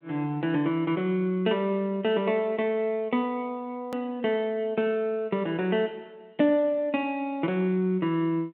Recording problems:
phone line; 150 Hz to 3.7 kHz, G.726
hard cut with a click; at 4 s

